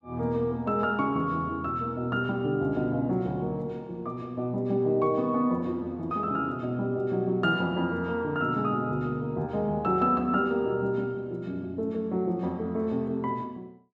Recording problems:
none

